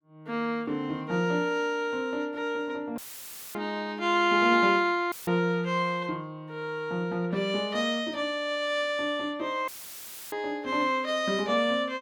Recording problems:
audio cutting out; at 3 s for 0.5 s, at 5 s and at 9.5 s for 0.5 s; filled with static

